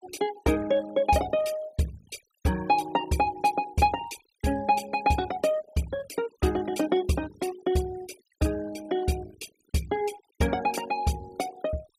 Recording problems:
denoising artefacts; signal-to-artefact ratio 18 dB

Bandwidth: 15.5 kHz